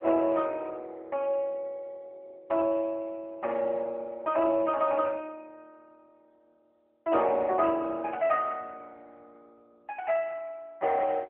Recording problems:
telephone audio; 260 Hz to 3.1 kHz, AMR-NB

